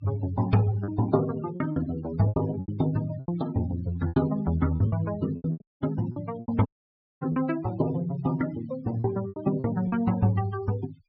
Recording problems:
treble missing; nothing above 5.5 kHz
noise reduction artefacts; signal-to-artefact ratio 18 dB
packet loss; 10% of the sound replaced, filled with repeated pitch periods
audio cutting out; at 5.5 s and at 6.5 s for 0.5 s

